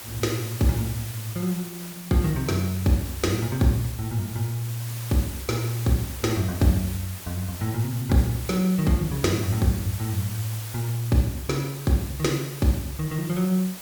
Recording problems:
hiss; slope -1 dB per octave, SNR 12 dB

